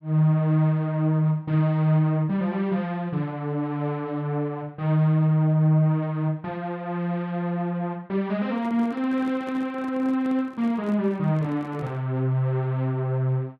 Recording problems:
microphone handling noise; from 8.5 to 12 s; peak -11 dB vs average level

